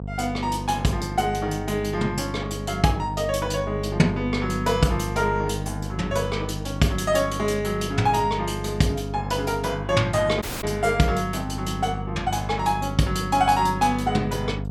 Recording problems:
hum; 50 Hz, harmonics up to 750 Hz, SNR 8 dB
dropout; at 10 s

